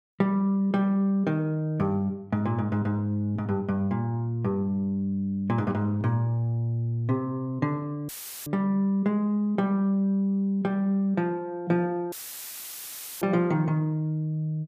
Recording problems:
dropout; at 8 s and at 12 s for 1 s; filled with static

